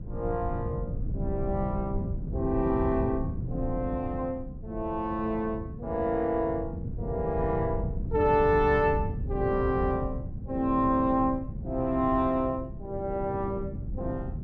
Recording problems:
wind on the microphone; below 150 Hz, SNR 6 dB

